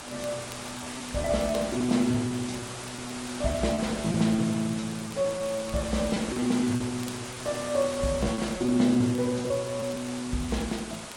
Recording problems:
lossy codec; Vorbis, then Vorbis, log-spectral distance 9 dB
hiss; slope -3 dB per octave, SNR 9 dB
crackle; vinyl, SNR 24 dB
lost packets; 8% of the sound replaced, filled with repeated pitch periods

